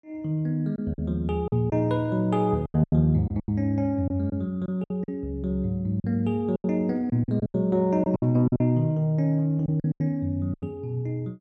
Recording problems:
packet loss; 11% of the sound replaced, filled with silence

